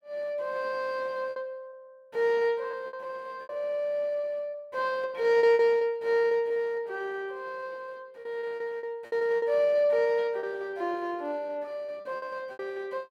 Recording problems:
packet loss; 11% of the sound replaced, filled with repeated pitch periods

